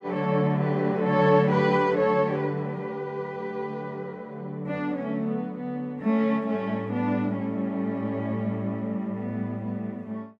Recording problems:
none

